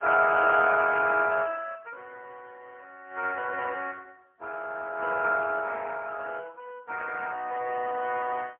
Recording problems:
telephone audio; 280 Hz to 2.5 kHz, AMR-NB, then MP3

